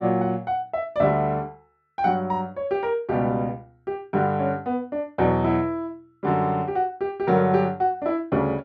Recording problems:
none

